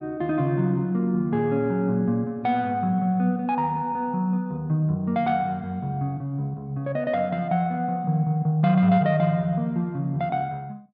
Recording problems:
none

